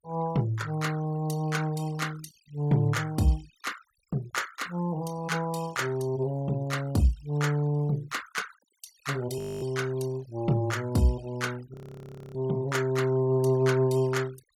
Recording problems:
denoising artefacts; signal-to-artefact ratio 20 dB
frozen audio; at 9.5 s and at 12 s for 0.5 s

